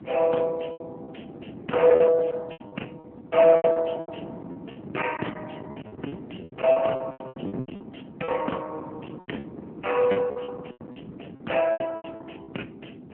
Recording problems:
phone line; 220 Hz to 3.2 kHz, AMR-NB
distorted audio; hard clipping, uneven, signal-to-distortion ratio 12 dB
wind on the microphone; below 650 Hz, SNR 15 dB
lost packets; 13% of the sound replaced, filled with repeated pitch periods

